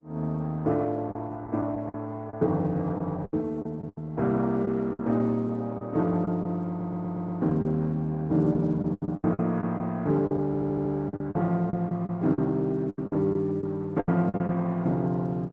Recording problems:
lossy compression; Opus, log-spectral distance 2 dB
packet loss; 10% of the sound replaced, filled with the last packet
stutter; at 6.5 s and at 10 s

